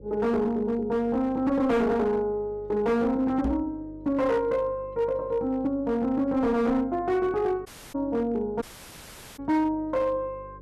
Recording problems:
distorted audio; hard clipping, signal-to-distortion ratio 11 dB
mains hum; 50 Hz, harmonics up to 550 Hz, SNR 22 dB
microphone thump; at 3.5 s; peak 0 dB vs average level
audio cutting out; at 7.5 s and at 8.5 s for 1 s

